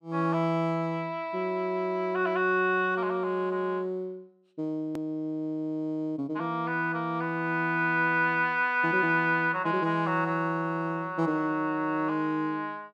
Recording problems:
edit click; at 5 s

